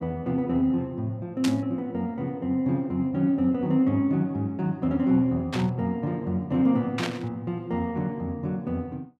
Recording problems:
burst of static; at 1.5 s, at 5.5 s and at 7 s; peak 0 dB vs average level

